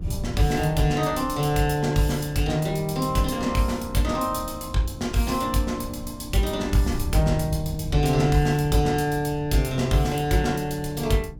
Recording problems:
hum; 60 Hz, harmonics up to 300 Hz, SNR 22 dB
wind noise; below 120 Hz, SNR 13 dB

